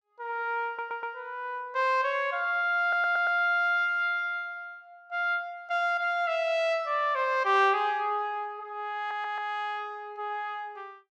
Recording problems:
audio stuttering; at 0.5 s, at 3 s and at 9 s

